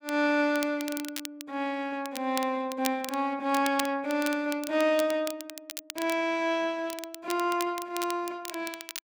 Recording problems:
crackle; vinyl, SNR 11 dB

